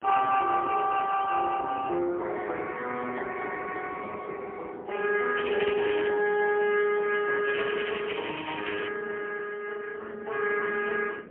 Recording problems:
phone line; 280 Hz to 3.3 kHz, AMR-NB, then MP3
wind on the microphone; below 460 Hz, SNR 18 dB
crackle; at 5.5 s and from 7.5 to 9 s; loose cable, SNR 8 dB

